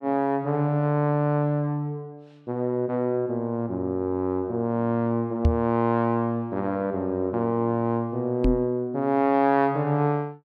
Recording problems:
microphone thump; at 5.5 s and at 8.5 s; peak +7 dB vs average level

